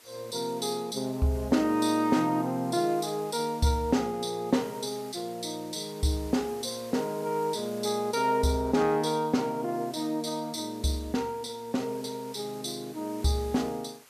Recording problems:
background hiss; slope -1 dB per octave, SNR 21 dB

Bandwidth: 14.5 kHz